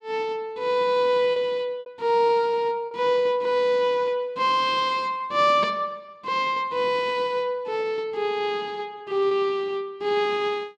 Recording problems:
lost packets; 3% of the sound replaced, filled with repeated pitch periods

